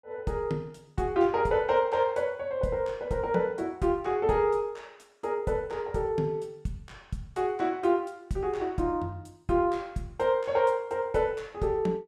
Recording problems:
none

